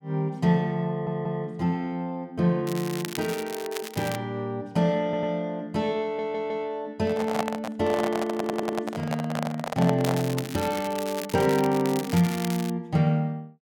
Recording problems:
audio stuttering; 4 times, first at 1 s
crackle; from 2.5 to 4 s and from 10 to 13 s; loose cable, SNR 11 dB
microphone handling noise; from 7 to 10 s; peak +4 dB vs average level

